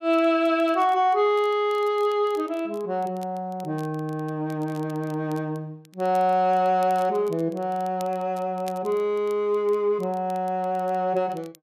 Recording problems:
crackling; vinyl, SNR 28 dB

